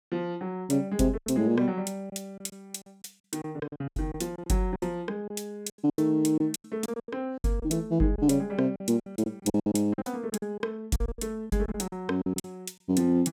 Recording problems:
packet loss; 14% of the sound replaced, filled with silence

